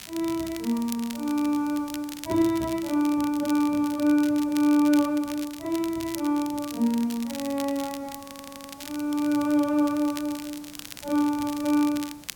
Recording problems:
hiss; slope -3 dB per octave, SNR 25 dB
crackling; vinyl, SNR 15 dB
audio stuttering; at 8 s

